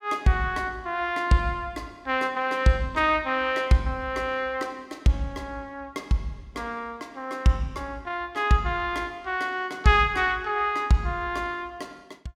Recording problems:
none

